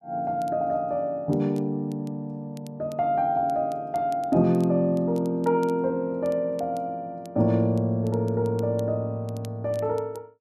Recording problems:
crackling; vinyl, SNR 29 dB

